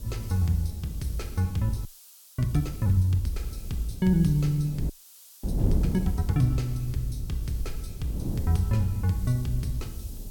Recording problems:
hiss; SNR 21 dB
rumble; below 70 Hz, SNR 13 dB
wind on the microphone; below 190 Hz, SNR 9 dB
frozen audio; at 2 s for 0.5 s and at 5 s for 0.5 s

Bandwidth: 17 kHz